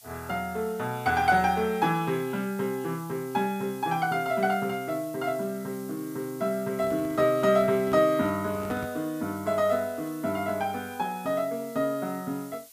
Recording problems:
hiss; slope +2 dB per octave, SNR 20 dB
microphone handling noise; from 6.5 to 9 s; peak -6 dB vs average level

